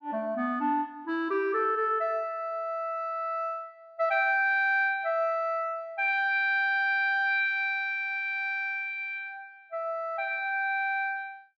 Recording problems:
none

